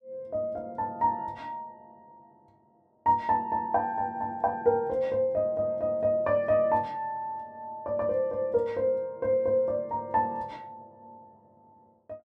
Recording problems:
none

